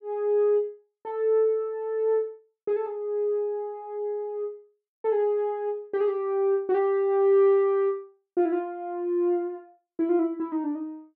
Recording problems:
none

